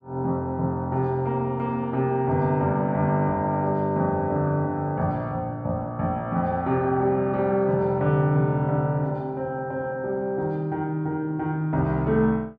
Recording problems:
none

